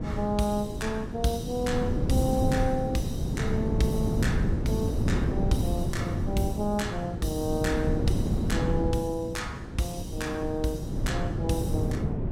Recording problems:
wind noise; below 230 Hz, SNR -1 dB

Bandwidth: 16.5 kHz